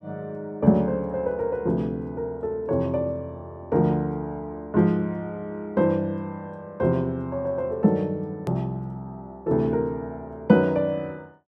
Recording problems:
hard cut with a click; at 8.5 s

